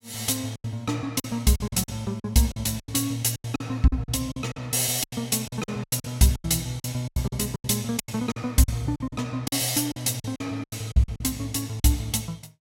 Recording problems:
packet loss; 15% of the sound replaced, filled with silence

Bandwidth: 16 kHz